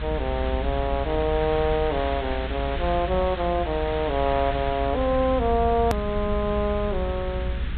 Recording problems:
treble missing; nothing above 4 kHz
hum; 60 Hz, harmonics up to 480 Hz, SNR 22 dB
background hiss; SNR 12 dB
rumble; below 74 Hz, strongest tone 58 Hz, SNR 6 dB
click at an edit; at 6 s

